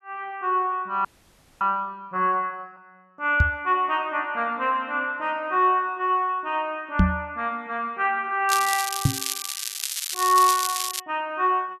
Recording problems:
frozen audio; at 1 s for 0.5 s
knock on the microphone; at 3.5 s, at 7 s and at 9 s; peak +8 dB vs average level
crackle; from 8.5 to 11 s; loose cable, SNR 3 dB

